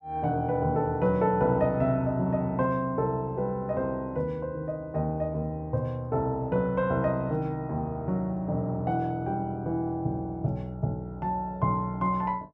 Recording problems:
none

